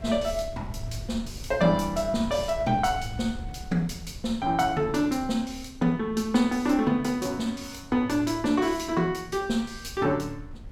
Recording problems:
wind noise; below 110 Hz, SNR 16 dB

